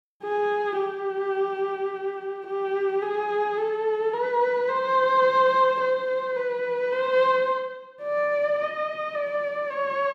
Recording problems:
none

